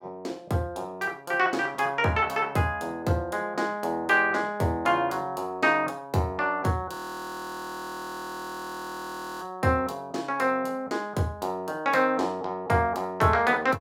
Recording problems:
frozen audio; at 7 s for 2.5 s

